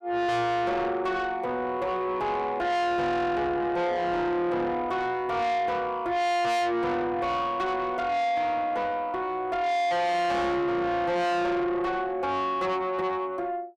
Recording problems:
distorted audio; soft clipping, signal-to-distortion ratio 6 dB

